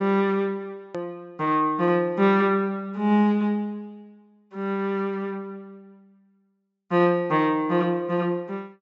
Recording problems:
low-pass filter; nothing above 8 kHz
edit click; at 1 s

